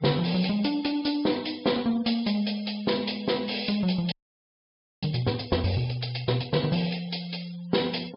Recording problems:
treble cut off; nothing above 5.2 kHz
noise reduction artefacts; signal-to-artefact ratio 19 dB
audio freezing; at 4 s for 1 s

